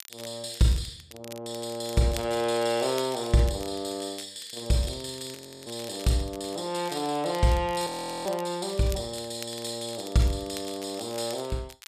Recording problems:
crackling; vinyl, SNR 17 dB
frozen audio; at 5.5 s and at 8 s

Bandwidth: 14.5 kHz